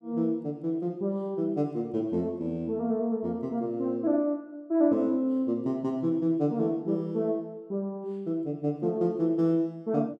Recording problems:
none

